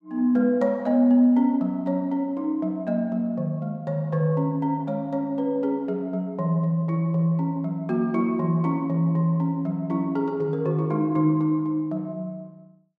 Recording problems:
none

